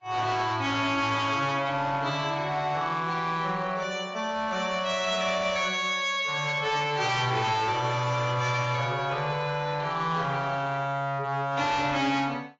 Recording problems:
lossy compression; AAC, log-spectral distance 3 dB, nothing above 7.1 kHz
distortion; hard clipping, uneven, signal-to-distortion ratio 11 dB

